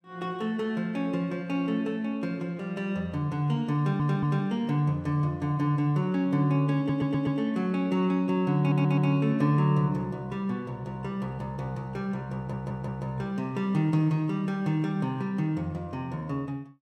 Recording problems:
audio stuttering; 4 times, first at 4 s

